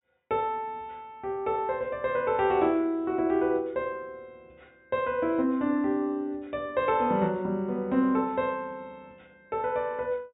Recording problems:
treble cut off; nothing above 4 kHz

